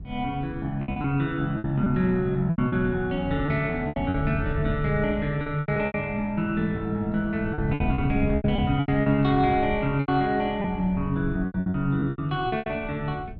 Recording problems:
wind noise; below 130 Hz, SNR 10 dB
packet loss; 12% of the sound replaced, filled with repeated pitch periods

